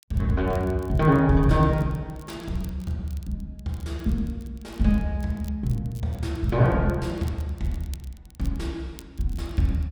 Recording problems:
crackle; vinyl, SNR 27 dB

